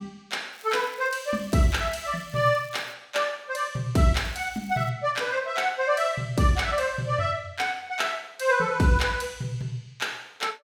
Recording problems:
crackling; from 0.5 to 3 s and at 4 s; loose cable, SNR 25 dB

